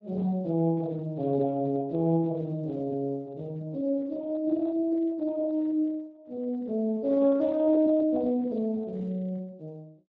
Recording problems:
lossy compression; Speex, log-spectral distance 2 dB

